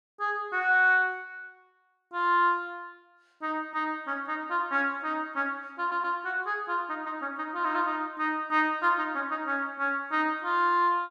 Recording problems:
audio stuttering; at 6 s

